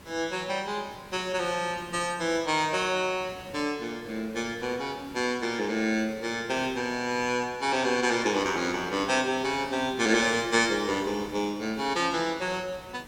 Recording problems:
background hiss; slope -5 dB per octave, SNR 20 dB

